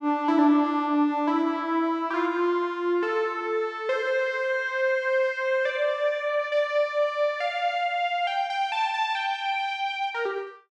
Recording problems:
none

